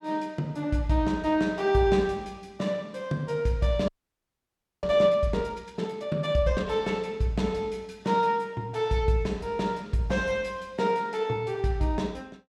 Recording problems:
frozen audio; at 4 s for 1 s

